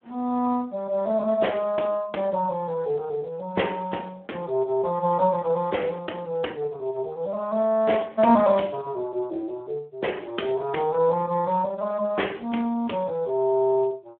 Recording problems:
telephone audio; 240 Hz to 3.3 kHz, Speex

